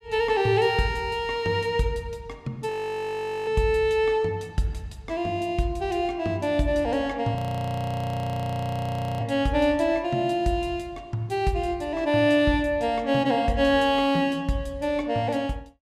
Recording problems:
audio freezing; at 2.5 s for 1 s and at 7.5 s for 2 s

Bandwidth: 15 kHz